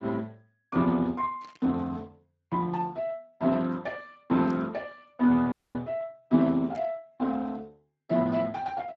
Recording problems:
lossy codec; Speex, log-spectral distance 3 dB
static burst; at 1.5 s, at 4.5 s and at 7 s; peak -19 dB vs average level
audio cutting out; at 5.5 s

